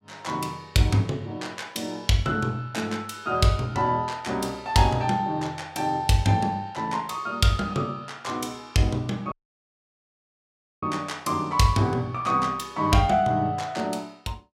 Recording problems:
audio cutting out; at 9.5 s for 1.5 s

